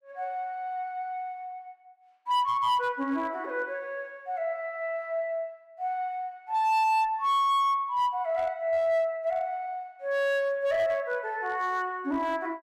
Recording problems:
distorted audio; hard clipping, uneven, signal-to-distortion ratio 12 dB

